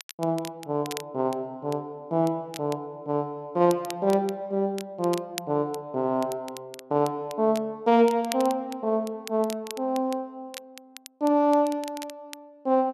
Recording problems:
crackle; vinyl, SNR 17 dB

